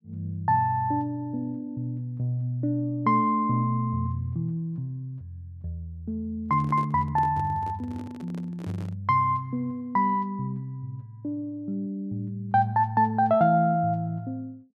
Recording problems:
microphone handling noise; from 6.5 to 9 s; peak -9 dB vs average level

